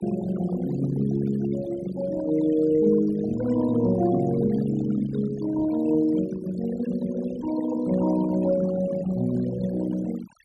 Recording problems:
denoising artefacts; signal-to-artefact ratio 15 dB

